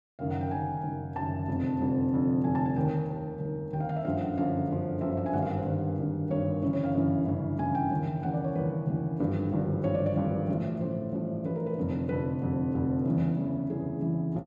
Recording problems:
none

